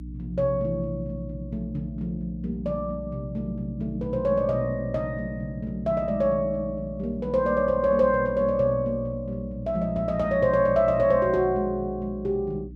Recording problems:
hum; 60 Hz, harmonics up to 300 Hz, SNR 14 dB

